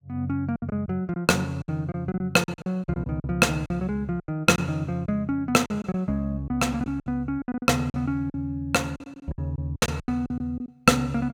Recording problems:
packet loss; 13% of the sound replaced, filled with silence

